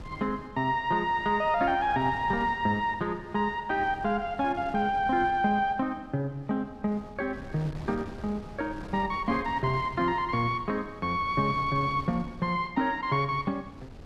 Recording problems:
wind noise; below 370 Hz, SNR 17 dB

